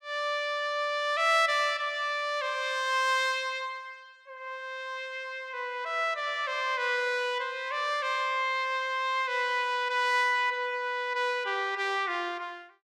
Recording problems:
none

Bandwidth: 16.5 kHz